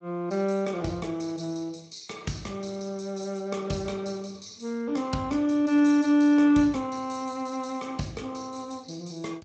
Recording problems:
codec artefacts; Speex, log-spectral distance 6 dB

